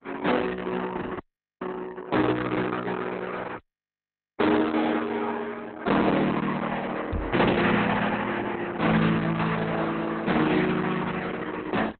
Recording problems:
lossy compression; MP2, then Opus, log-spectral distance 4 dB, nothing above 4 kHz
distorted audio; soft clipping, signal-to-distortion ratio 11 dB
dropout; at 1 s and at 3.5 s for 1 s
knock on the microphone; at 7 s; peak -3 dB vs average level

